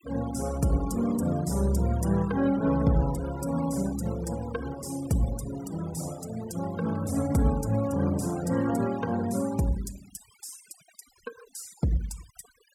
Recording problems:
denoising artefacts; signal-to-artefact ratio 18 dB

